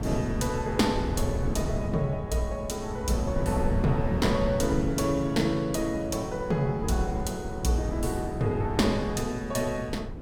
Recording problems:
wind noise; below 210 Hz, SNR 5 dB

